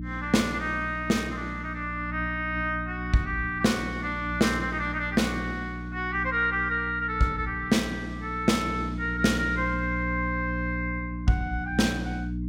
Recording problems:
electrical hum; 60 Hz, harmonics up to 300 Hz, SNR 7 dB

